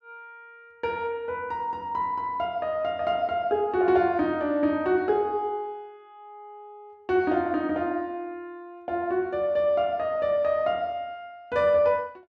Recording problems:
none

